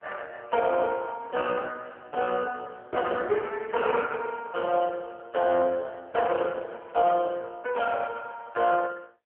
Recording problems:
telephone audio; 190 Hz to 3.2 kHz, AMR-NB

